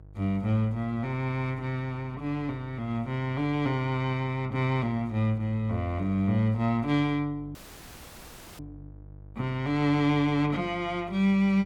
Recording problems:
mains hum; 50 Hz, harmonics up to 650 Hz, SNR 20 dB
audio cutting out; at 7.5 s for 1 s

